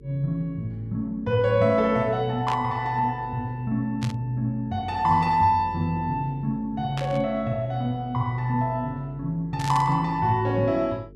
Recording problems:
electrical hum; 50 Hz, harmonics up to 450 Hz, SNR 21 dB
burst of static; 4 times, first at 2.5 s; peak -5 dB vs average level

